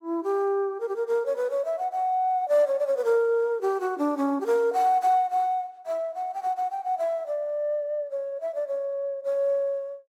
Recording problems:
none

